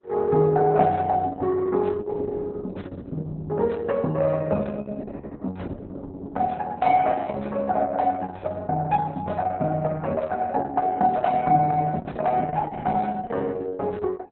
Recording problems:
lossy codec; Opus, log-spectral distance 3 dB, nothing above 4 kHz

